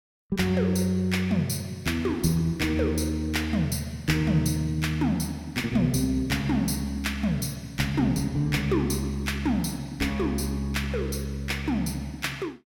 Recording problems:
none

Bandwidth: 17 kHz